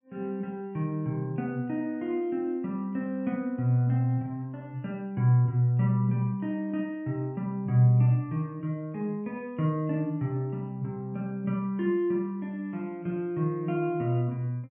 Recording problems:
low-pass filter; nothing above 3.4 kHz

